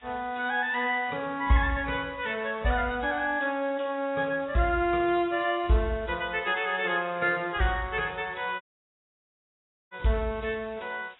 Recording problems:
lossy codec; AAC, log-spectral distance 7 dB, nothing above 3.6 kHz
background hiss; SNR 28 dB
audio cutting out; at 8.5 s for 1.5 s

